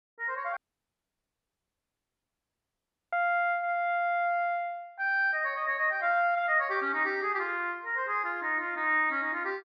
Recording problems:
dropout; at 0.5 s for 2.5 s

